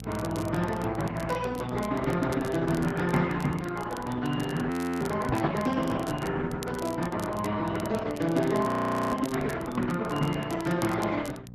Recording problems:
codec artefacts; Opus, log-spectral distance 3 dB, nothing above 13.1 kHz
electrical hum; 60 Hz, harmonics up to 720 Hz, SNR 13 dB
crackling; vinyl, SNR 18 dB
audio freezing; at 4.5 s and at 8.5 s
microphone thump; at 5.5 s; peak +2 dB vs average level

